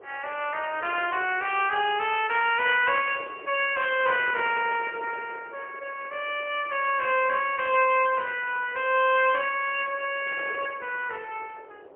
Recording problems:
phone line; 370 Hz to 3.1 kHz, AMR-NB, then MP3
wind noise; below 660 Hz, SNR 20 dB

